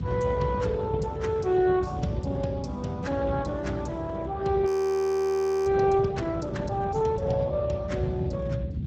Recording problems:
lossy compression; Speex, log-spectral distance 3 dB, nothing above 18.3 kHz
low-frequency rumble; below 180 Hz, SNR 7 dB
audio freezing; at 4.5 s for 1 s

